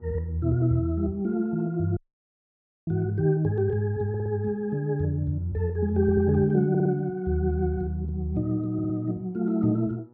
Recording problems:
mains hum; 60 Hz, harmonics up to 1.3 kHz, SNR 29 dB
dropout; at 2 s for 1 s
audio stuttering; 4 times, first at 4 s

